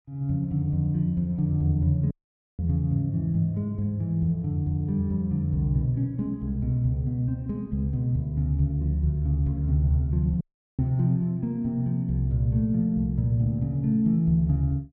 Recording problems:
dropout; at 2 s and at 10 s

